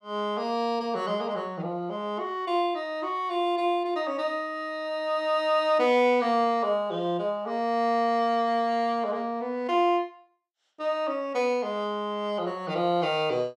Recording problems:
none

